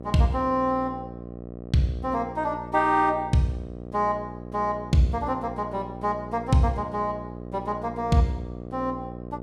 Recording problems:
electrical hum; 60 Hz, harmonics up to 1.2 kHz, SNR 12 dB

